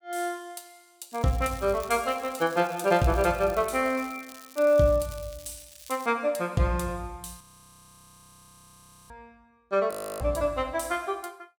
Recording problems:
crackling; from 1 to 6 s; loose cable, SNR 20 dB
frozen audio; at 7.5 s for 1.5 s and at 10 s

